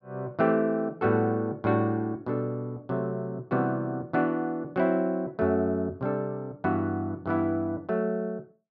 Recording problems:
none

